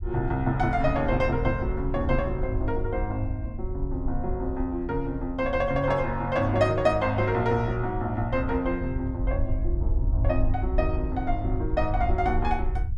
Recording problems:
low-frequency rumble; below 68 Hz, SNR 5 dB

